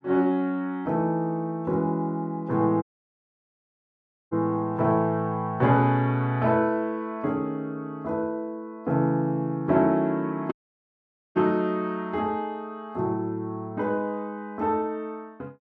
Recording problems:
audio cutting out; at 3 s for 1.5 s and at 11 s for 1 s

